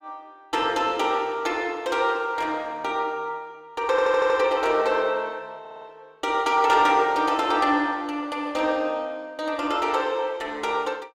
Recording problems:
stutter; at 4 s and at 5.5 s

